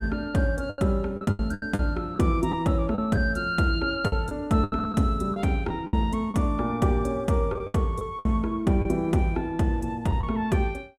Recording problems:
lost packets; 9% of the sound replaced, filled with the last packet

